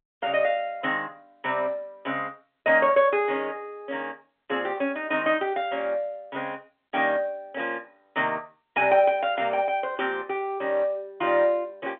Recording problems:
phone line; 190 Hz to 3.5 kHz, G.711

